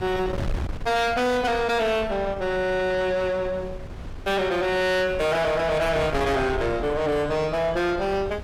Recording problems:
distortion; soft clipping, signal-to-distortion ratio 7 dB
wind on the microphone; below 540 Hz, SNR 11 dB

